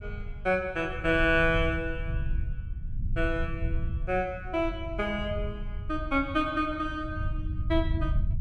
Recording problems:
low-frequency rumble; below 88 Hz, SNR 6 dB

